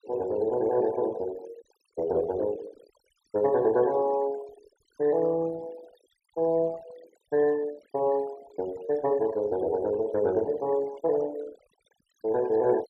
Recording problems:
noise reduction artefacts; signal-to-artefact ratio 21 dB

